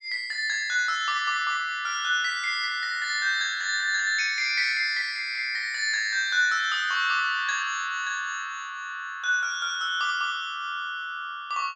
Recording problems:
treble cut off; nothing above 8 kHz

